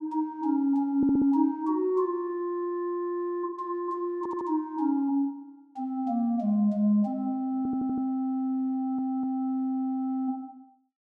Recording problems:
stutter; 4 times, first at 1 s

